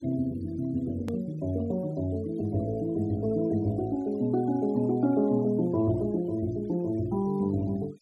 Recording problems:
denoising artefacts; signal-to-artefact ratio 25 dB
edit click; at 1 s

